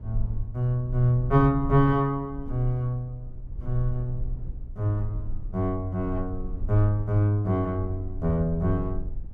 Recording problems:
low-frequency rumble; below 54 Hz, strongest tone 20 Hz, SNR 11 dB

